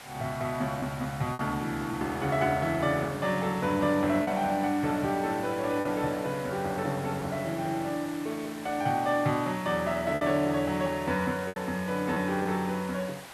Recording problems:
hiss; SNR 15 dB
lost packets; 3% of the sound replaced, filled with repeated pitch periods

